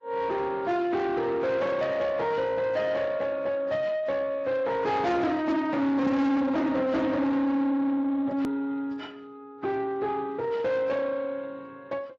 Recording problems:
codec artefacts; AAC, then Speex, log-spectral distance 2 dB, nothing above 13.1 kHz
distortion; soft clipping, signal-to-distortion ratio 7 dB
click at an edit; at 8.5 s

